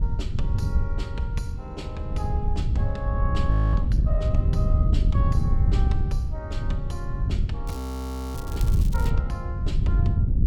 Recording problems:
wind noise; below 98 Hz, SNR -11 dB
frozen audio; at 3.5 s and at 8 s for 0.5 s
crackle; from 7.5 to 9 s; loose cable, SNR 9 dB

